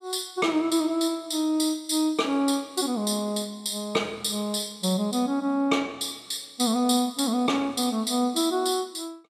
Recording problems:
none

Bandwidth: 14.5 kHz